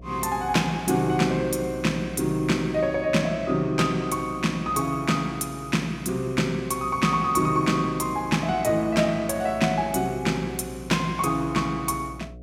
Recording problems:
hum; 60 Hz, harmonics up to 720 Hz, SNR 20 dB

